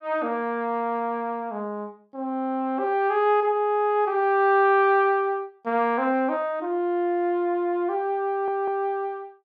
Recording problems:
stutter; at 8.5 s

